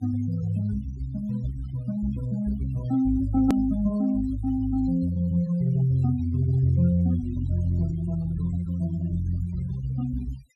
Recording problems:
noise reduction artefacts; signal-to-artefact ratio 20 dB
click at an edit; at 3.5 s

